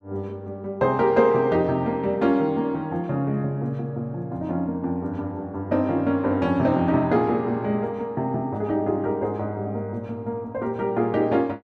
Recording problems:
none

